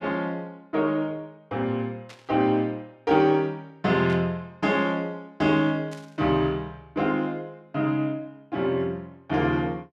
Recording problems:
static burst; at 2 s, at 4 s and at 6 s; peak -14 dB vs average level

